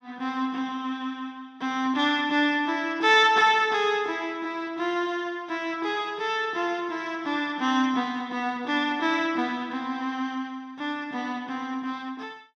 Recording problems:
none

